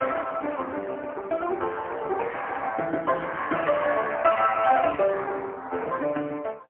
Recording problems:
telephone audio; 300 Hz to 2.6 kHz, AMR-NB, then MP3

